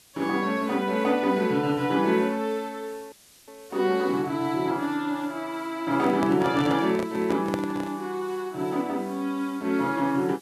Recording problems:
hiss; SNR 26 dB
audio cutting out; at 3 s
handling noise; from 6 to 8 s; peak 0 dB vs average level

